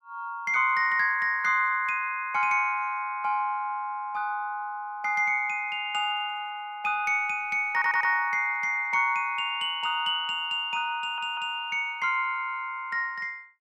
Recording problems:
audio stuttering; at 7.5 s and at 11 s

